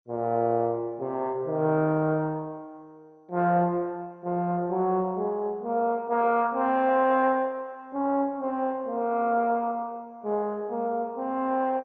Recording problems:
lossy codec; MP2, log-spectral distance 2 dB

